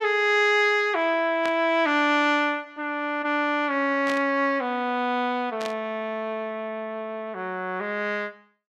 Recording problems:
burst of static; at 1.5 s, at 4 s and at 5.5 s; peak -5 dB vs average level

